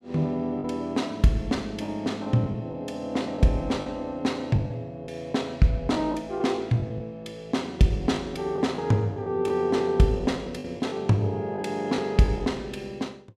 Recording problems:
lost packets; 7% of the sound replaced, filled with the last packet

